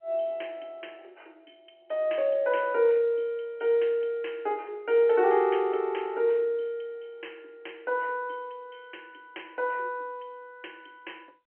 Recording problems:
phone line; 280 Hz to 3.2 kHz, G.711

